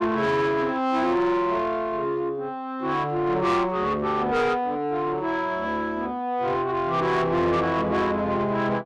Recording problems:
distortion; soft clipping, signal-to-distortion ratio 10 dB

